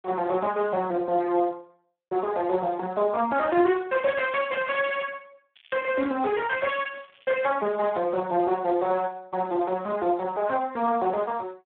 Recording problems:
telephone audio; 260 Hz to 3.6 kHz, Speex
crackling; from 5.5 to 8 s; loose cable, SNR 27 dB

